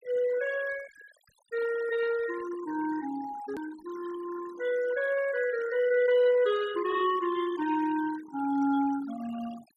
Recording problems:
denoising artefacts; signal-to-artefact ratio 17 dB
hard cut with a click; at 3.5 s

